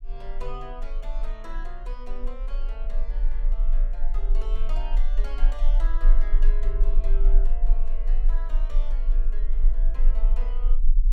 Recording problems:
low-frequency rumble; below 32 Hz, strongest tone 22 Hz, SNR -16 dB

